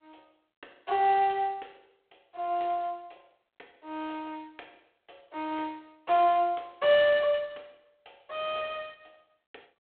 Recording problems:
phone line; 320 Hz to 3.5 kHz, G.726

